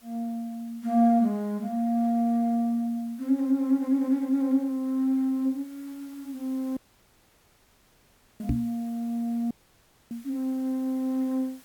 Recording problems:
background hiss; slope -1 dB per octave, SNR 27 dB
dropout; at 7 s for 1.5 s and at 9.5 s for 0.5 s
microphone thump; at 8.5 s; peak +3 dB vs average level

